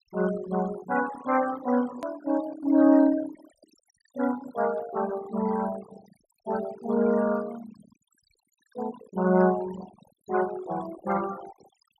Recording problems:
denoising artefacts; signal-to-artefact ratio 15 dB
edit click; at 2 s

